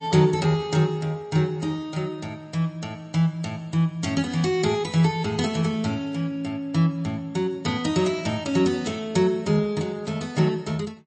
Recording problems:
lossy codec; MP3, log-spectral distance 2 dB, nothing above 8.2 kHz

